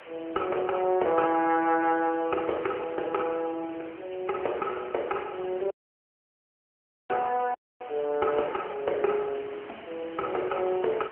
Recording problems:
telephone audio; 320 Hz to 3 kHz, AMR-NB
background hiss; SNR 19 dB
audio cutting out; at 5.5 s for 1.5 s and at 7.5 s

